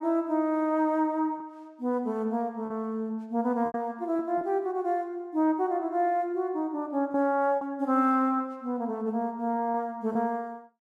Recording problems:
packet loss; 3% of the sound replaced, filled with repeated pitch periods

